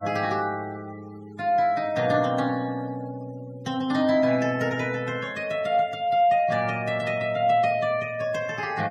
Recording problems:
denoising artefacts; signal-to-artefact ratio 24 dB

